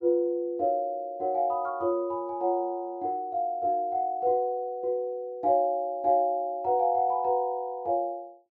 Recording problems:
none

